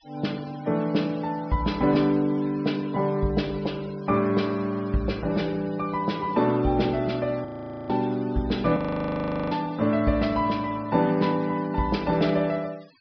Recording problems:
treble cut off; nothing above 5.5 kHz
denoising artefacts; signal-to-artefact ratio 23 dB
audio freezing; at 7.5 s and at 9 s for 0.5 s

